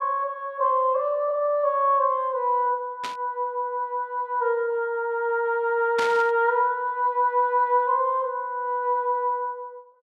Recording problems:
burst of static; at 3 s and at 6 s; peak -4 dB vs average level

